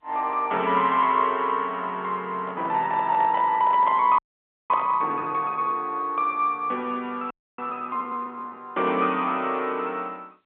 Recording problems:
telephone audio; 280 Hz to 3.6 kHz, G.711
handling noise; from 2.5 to 5 s; peak -4 dB vs average level
frozen audio; at 4 s for 0.5 s and at 7.5 s

